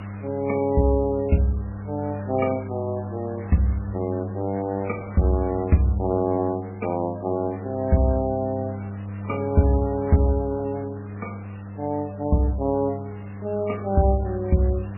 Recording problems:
codec artefacts; MP3, log-spectral distance 6 dB, nothing above 2.4 kHz
electrical hum; 50 Hz, harmonics up to 500 Hz, SNR 10 dB
background hiss; SNR 21 dB

